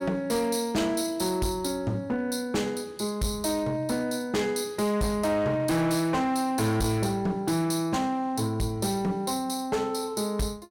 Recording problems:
distorted audio; hard clipping, uneven, signal-to-distortion ratio 11 dB

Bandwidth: 16.5 kHz